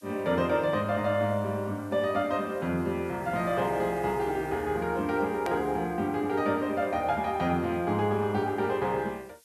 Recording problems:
hiss; slope +6 dB per octave, SNR 28 dB
hard cut with a click; at 5.5 s

